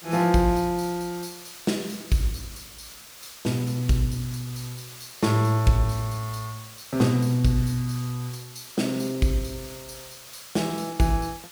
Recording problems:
background hiss; slope +1 dB per octave, SNR 16 dB

